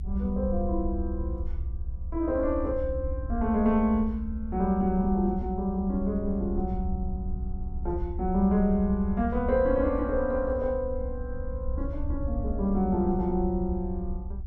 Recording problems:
low-frequency rumble; below 74 Hz, SNR 7 dB

